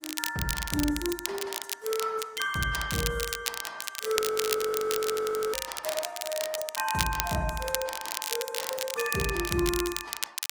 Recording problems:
codec artefacts; Opus, log-spectral distance 4 dB, nothing above 19 kHz
crackling; vinyl, SNR 2 dB
frozen audio; at 4 s for 1.5 s

